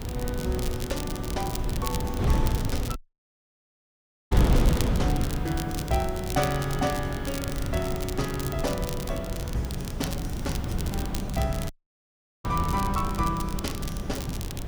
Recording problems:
background hiss; slope 0 dB per octave, SNR 25 dB
wind noise; below 190 Hz, SNR -1 dB
crackle; vinyl, SNR 8 dB
dropout; at 3 s for 1.5 s and at 12 s for 0.5 s

